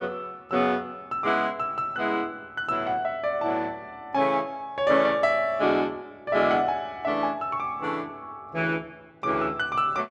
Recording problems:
none

